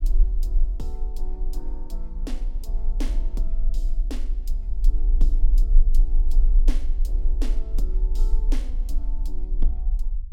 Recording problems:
low-frequency rumble; below 36 Hz, strongest tone 22 Hz, SNR -15 dB

